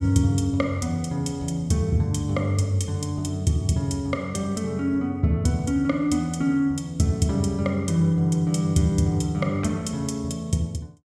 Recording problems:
none

